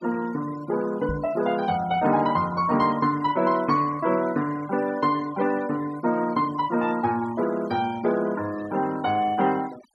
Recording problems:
noise reduction artefacts; signal-to-artefact ratio 19 dB
microphone thump; at 1 s; peak -1 dB vs average level

